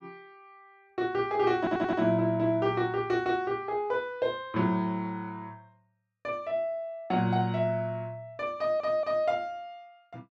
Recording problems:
audio stuttering; at 1.5 s and at 8.5 s

